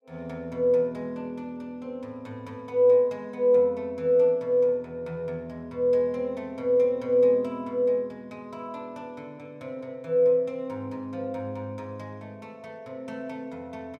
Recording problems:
none

